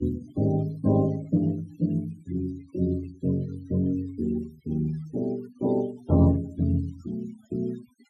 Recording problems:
denoising artefacts; signal-to-artefact ratio 24 dB

